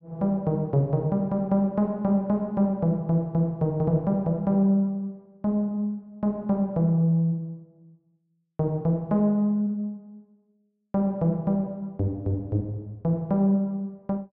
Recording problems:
none

